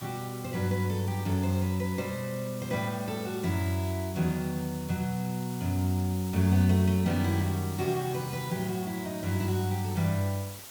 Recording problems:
hiss; slope -1 dB per octave, SNR 14 dB

